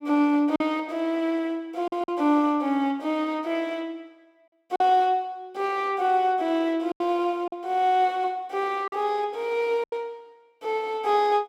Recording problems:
packet loss; 4% of the sound replaced, filled with silence

